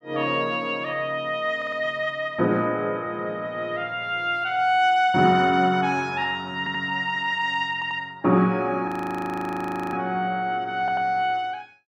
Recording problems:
audio stuttering; 4 times, first at 1.5 s
audio freezing; at 9 s for 1 s

